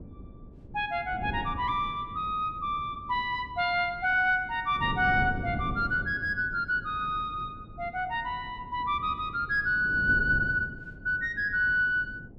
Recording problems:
wind on the microphone; below 240 Hz, SNR 13 dB

